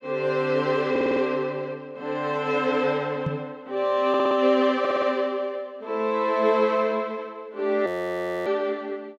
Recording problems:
audio stuttering; at 1 s, at 4 s and at 5 s
microphone bump; at 3.5 s; peak 0 dB vs average level
audio freezing; at 8 s for 0.5 s

